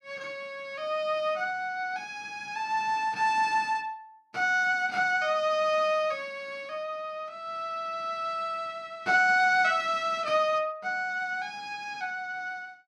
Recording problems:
none

